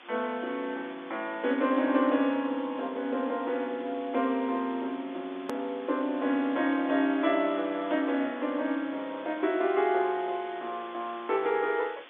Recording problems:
phone line; 220 Hz to 3.7 kHz, G.711
background hiss; SNR 20 dB
edit click; at 5.5 s

